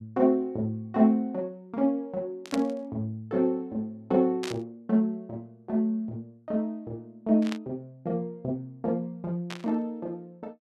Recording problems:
static burst; 4 times, first at 2.5 s; peak -2 dB vs average level

